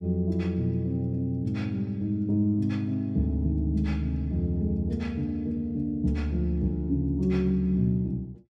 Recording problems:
none

